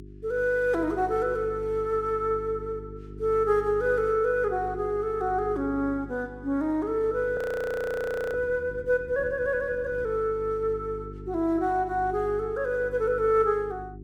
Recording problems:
electrical hum; 50 Hz, harmonics up to 400 Hz, SNR 16 dB
audio freezing; at 7.5 s for 1 s

